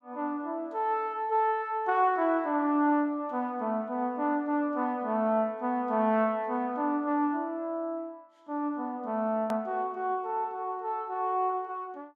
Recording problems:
click at an edit; at 9.5 s

